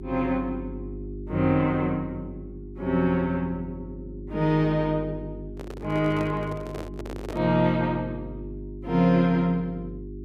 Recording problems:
hum; 50 Hz, harmonics up to 400 Hz, SNR 13 dB
handling noise; from 5.5 to 7.5 s; peak -7 dB vs average level

